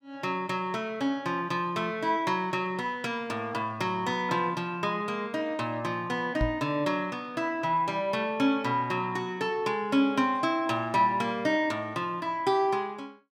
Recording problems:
microphone bump; at 6.5 s; peak +2 dB vs average level

